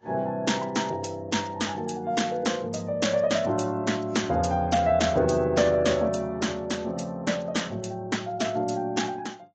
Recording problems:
lossy codec; AAC, log-spectral distance 3 dB, nothing above 7.3 kHz

